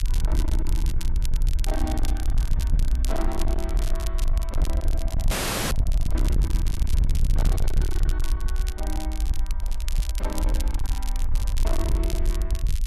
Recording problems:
distorted audio; hard clipping, signal-to-distortion ratio 6 dB
low-frequency rumble; below 56 Hz, SNR -9 dB
crackle; vinyl, SNR 4 dB
audio freezing; at 5.5 s
handling noise; from 9.5 to 11 s; peak -10 dB vs average level

